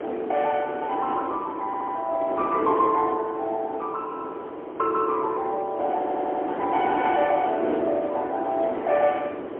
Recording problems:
phone line; 280 Hz to 3 kHz, AMR-NB, then MP3
wind on the microphone; below 600 Hz, SNR 7 dB
audio stuttering; at 1.5 s and at 6 s

